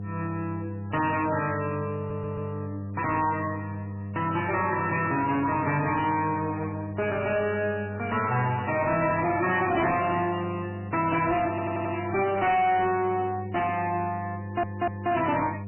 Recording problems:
codec artefacts; MP3, log-spectral distance 4 dB, nothing above 2.7 kHz
distortion; soft clipping, signal-to-distortion ratio 7 dB
hum; 50 Hz, harmonics up to 700 Hz, SNR 10 dB
stutter; at 2 s, at 11 s and at 14 s

